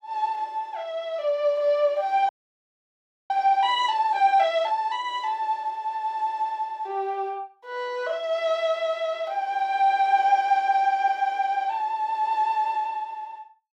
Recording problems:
frozen audio; at 2.5 s for 1 s

